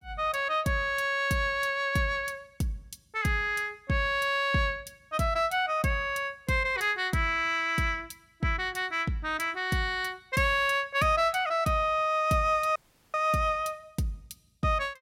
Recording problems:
audio cutting out; at 13 s

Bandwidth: 16.5 kHz